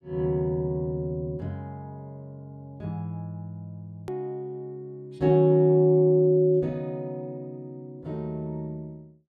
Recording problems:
hard cut with a click; at 4 s

